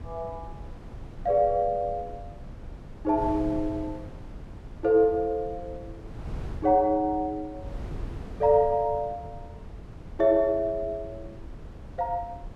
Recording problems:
wind on the microphone; below 180 Hz, SNR 16 dB

